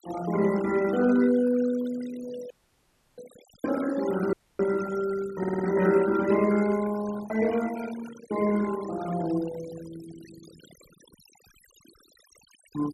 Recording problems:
noise reduction artefacts; signal-to-artefact ratio 16 dB
dropout; at 2.5 s for 0.5 s and at 4.5 s
audio stuttering; at 5.5 s

